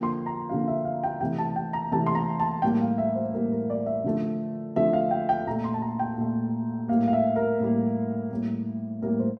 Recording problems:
none

